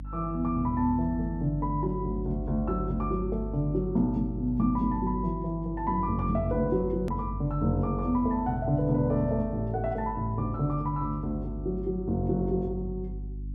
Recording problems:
hum; 50 Hz, harmonics up to 300 Hz, SNR 9 dB
click at an edit; at 7 s

